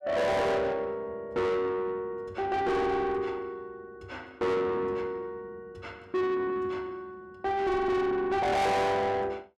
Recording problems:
distorted audio; soft clipping, signal-to-distortion ratio 6 dB

